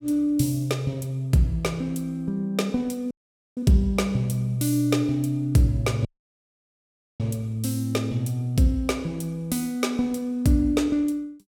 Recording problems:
dropout; at 3 s and at 6 s for 1 s

